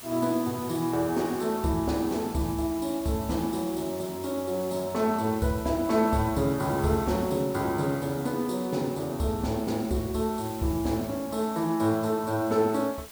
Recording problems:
background hiss; slope -1 dB per octave, SNR 15 dB

